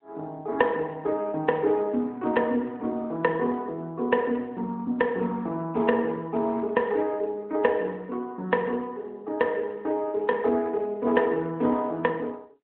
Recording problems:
phone line; 190 Hz to 3.3 kHz, AMR-NB

